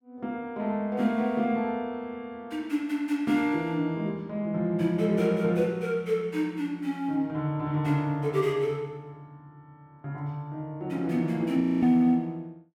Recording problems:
audio freezing; at 12 s

